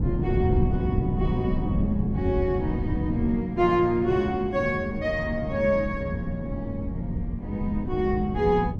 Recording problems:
wind noise; below 180 Hz, SNR 3 dB

